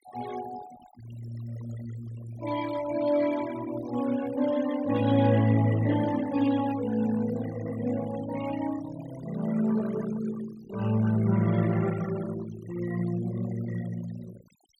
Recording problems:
noise reduction artefacts; signal-to-artefact ratio 17 dB

